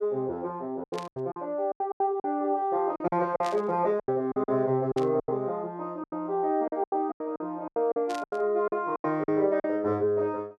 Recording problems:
packet loss; 14% of the sound replaced, filled with silence
static burst; 4 times, first at 1 s; peak -7 dB vs average level

